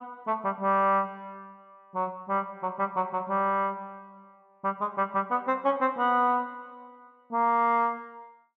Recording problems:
none

